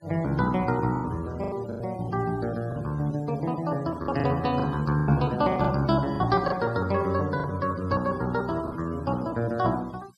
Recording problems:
denoising artefacts; signal-to-artefact ratio 24 dB
lost packets; 7% of the sound replaced, filled with the last packet

